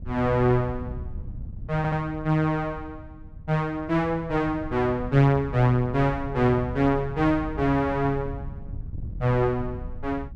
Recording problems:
wind noise; below 110 Hz, SNR 13 dB
stutter; at 2 s

